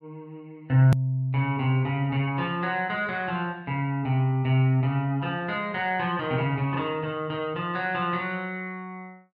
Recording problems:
click at an edit; at 1 s

